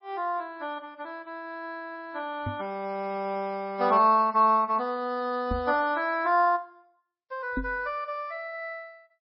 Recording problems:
lossy codec; MP3, log-spectral distance 2 dB, nothing above 4.5 kHz
microphone thump; at 2.5 s, at 5.5 s and at 7.5 s; peak 0 dB vs average level

